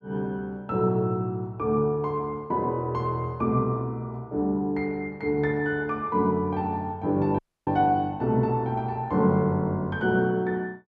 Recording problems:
dropout; at 7.5 s

